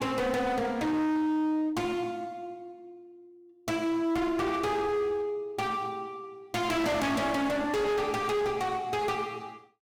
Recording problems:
distortion; hard clipping, uneven, signal-to-distortion ratio 6 dB

